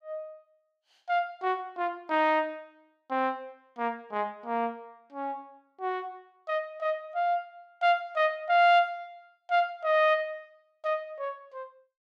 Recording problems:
none

